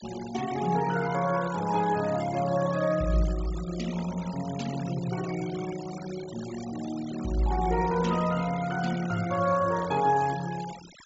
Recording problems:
treble cut off; nothing above 8 kHz
noise reduction artefacts; signal-to-artefact ratio 15 dB

